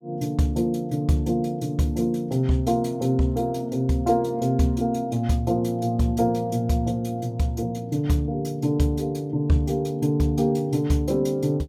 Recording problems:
none

